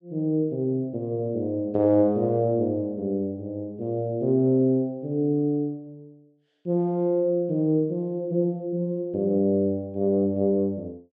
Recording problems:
none

